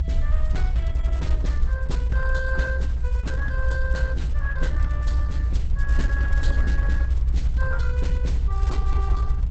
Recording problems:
lossy compression; Opus, log-spectral distance 2 dB, nothing above 8 kHz
rumble; below 62 Hz, SNR -9 dB

